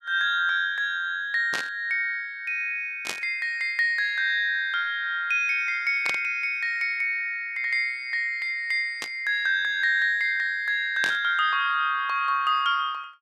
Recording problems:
static burst; 5 times, first at 1.5 s; peak -1 dB vs average level

